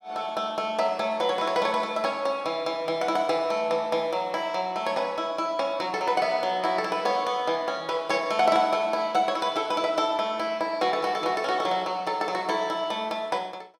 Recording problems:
none

